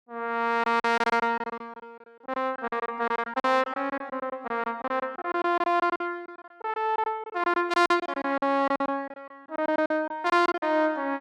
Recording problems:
lost packets; 16% of the sound replaced, filled with silence

